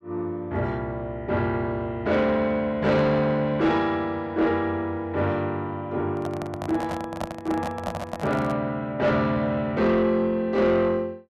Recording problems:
distorted audio; soft clipping, signal-to-distortion ratio 11 dB
microphone handling noise; from 6 to 8.5 s; peak -1 dB vs average level

